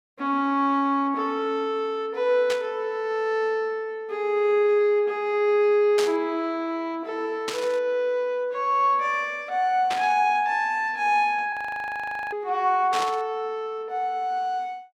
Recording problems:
static burst; 5 times, first at 2.5 s; peak -1 dB vs average level
audio freezing; at 12 s for 1 s

